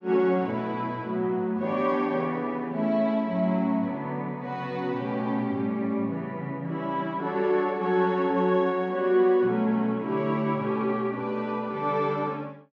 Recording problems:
none

